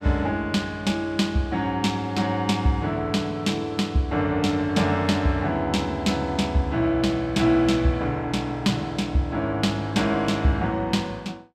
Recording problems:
none

